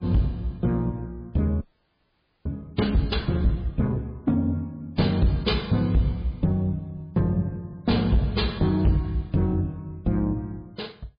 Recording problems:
codec artefacts; MP3, log-spectral distance 2 dB, nothing above 4.6 kHz
distortion; soft clipping, signal-to-distortion ratio 11 dB
audio freezing; at 1.5 s for 1 s

